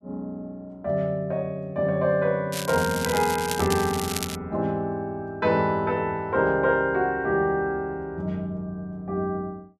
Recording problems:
crackling; from 2.5 to 4.5 s; loose cable, SNR 7 dB

